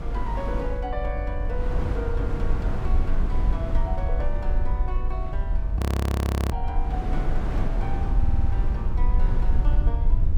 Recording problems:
low-frequency rumble; below 62 Hz, strongest tone 22 Hz, SNR -9 dB
wind noise; below 540 Hz, SNR 1 dB
audio freezing; at 6 s for 0.5 s
audio stuttering; at 8 s

